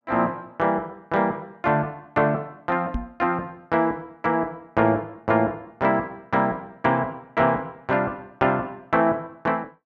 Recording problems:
microphone bump; at 3 s; peak -1 dB vs average level

